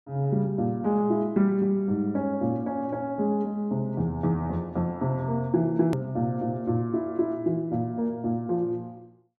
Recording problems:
click at an edit; at 6 s

